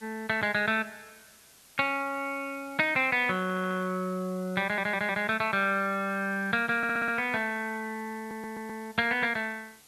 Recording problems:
background hiss; slope 0 dB per octave, SNR 24 dB
stutter; 4 times, first at 3.5 s

